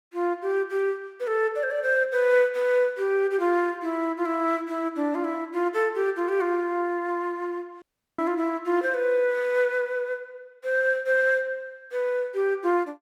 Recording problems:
dropout; at 8 s

